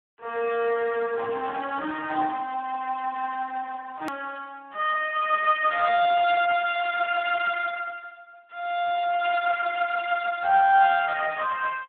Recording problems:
phone line; 340 Hz to 3.4 kHz, Speex
click at an edit; at 4 s

